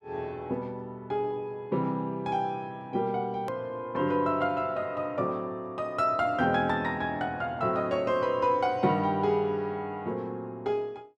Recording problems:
hard cut with a click; at 3.5 s

